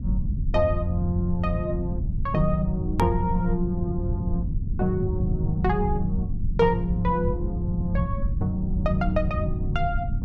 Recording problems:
low-frequency rumble; below 120 Hz, SNR 2 dB
click at an edit; at 3 s

